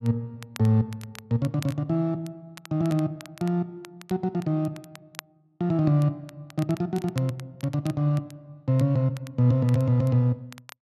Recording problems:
crackle; vinyl, SNR 22 dB

